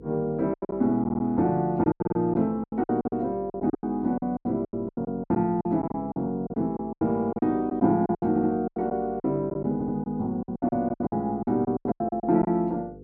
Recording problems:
hum; 50 Hz, harmonics up to 500 Hz, SNR 20 dB
lost packets; 18% of the sound replaced, filled with silence
stutter; 4 times, first at 1 s

